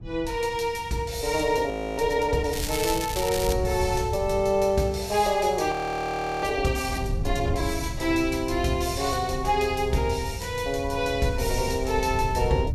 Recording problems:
wind on the microphone; below 110 Hz, SNR 10 dB
audio freezing; at 1.5 s and at 5.5 s for 0.5 s
crackling; from 2.5 to 3.5 s; loose cable, SNR 7 dB

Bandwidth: 14.5 kHz